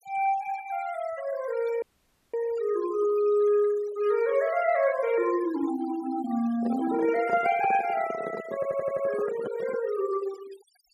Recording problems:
noise reduction artefacts; signal-to-artefact ratio 17 dB
dropout; at 2 s for 0.5 s
microphone handling noise; from 6.5 to 10 s; peak -5 dB vs average level
audio stuttering; at 8.5 s

